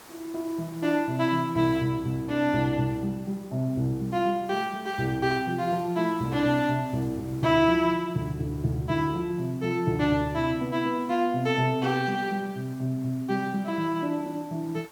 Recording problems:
background hiss; SNR 24 dB

